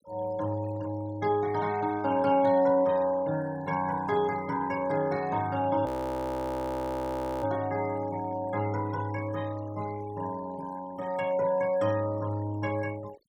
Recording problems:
noise reduction artefacts; signal-to-artefact ratio 19 dB
frozen audio; at 6 s for 1.5 s

